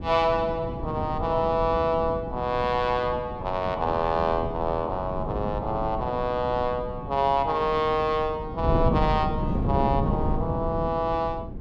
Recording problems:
wind noise; below 250 Hz, SNR 6 dB

